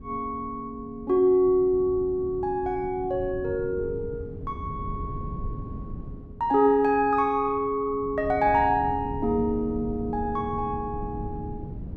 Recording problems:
wind noise; below 180 Hz, SNR 13 dB

